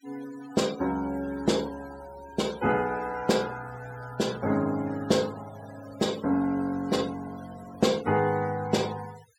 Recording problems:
noise reduction artefacts; signal-to-artefact ratio 18 dB

